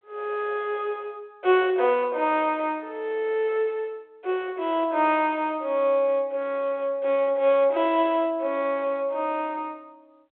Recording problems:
telephone audio; 320 Hz to 3.6 kHz, G.726

